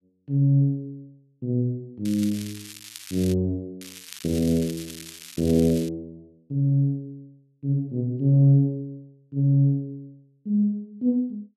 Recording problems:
crackle; from 2 to 3.5 s and from 4 to 6 s; loose cable, SNR 16 dB

